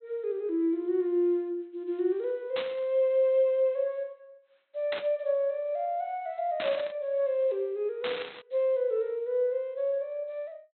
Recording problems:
treble missing; nothing above 4.1 kHz
burst of static; 4 times, first at 2.5 s; peak -3 dB vs average level

